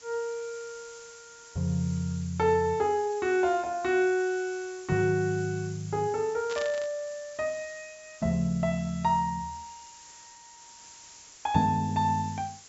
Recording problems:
treble cut off; nothing above 8 kHz
background hiss; SNR 19 dB
static burst; at 6.5 s; peak -6 dB vs average level

